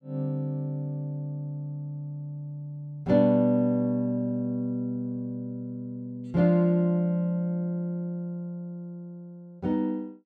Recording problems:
none

